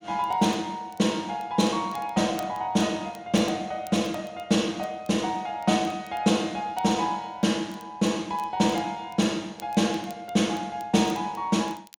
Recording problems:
crackling; vinyl, SNR 27 dB

